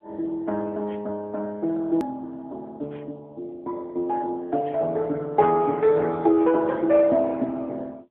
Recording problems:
phone line; 170 Hz to 3.6 kHz, AMR-NB
edit click; at 2 s

